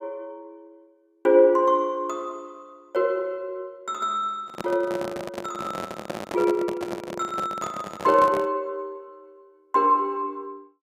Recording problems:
handling noise; from 4.5 to 8.5 s; peak -3 dB vs average level

